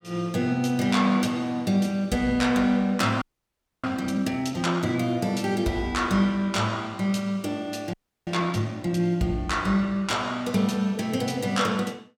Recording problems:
frozen audio; at 3 s for 0.5 s and at 8 s

